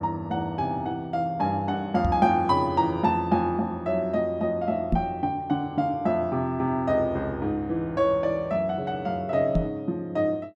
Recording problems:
microphone thump; at 2 s, at 5 s and at 9.5 s; peak +5 dB vs average level

